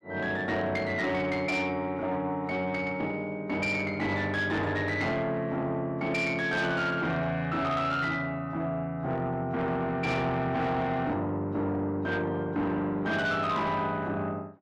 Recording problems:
distortion; soft clipping, signal-to-distortion ratio 12 dB

